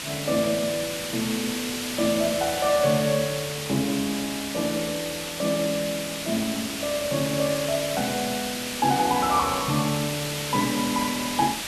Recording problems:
background hiss; slope 0 dB per octave, SNR 4 dB

